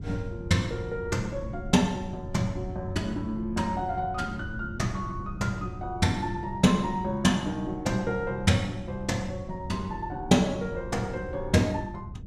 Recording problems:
wind on the microphone; below 150 Hz, SNR 12 dB

